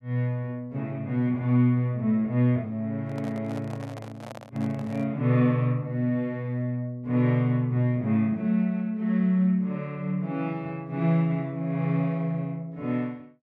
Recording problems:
handling noise; from 3 to 5 s; peak -10 dB vs average level

